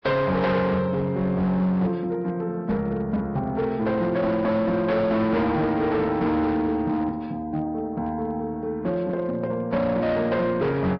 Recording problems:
lossy codec; Vorbis, log-spectral distance 2 dB
distortion; hard clipping, signal-to-distortion ratio 11 dB

